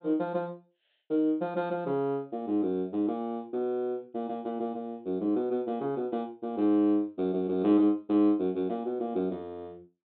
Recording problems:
treble cut off; nothing above 4 kHz

